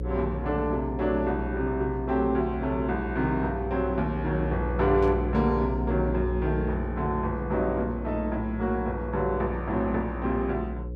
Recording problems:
hum; 60 Hz, harmonics up to 540 Hz, SNR 6 dB
burst of static; at 5 s; peak -15 dB vs average level

